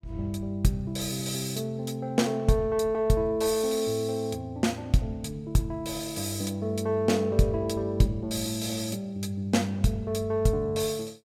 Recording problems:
none

